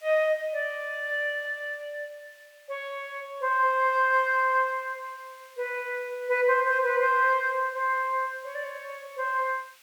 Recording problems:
background hiss; SNR 28 dB

